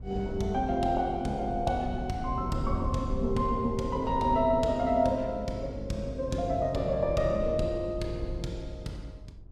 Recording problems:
low-frequency rumble; below 110 Hz, SNR 11 dB

